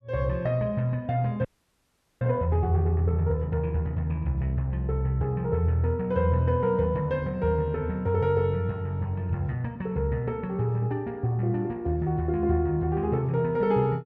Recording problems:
audio freezing; at 1.5 s for 1 s

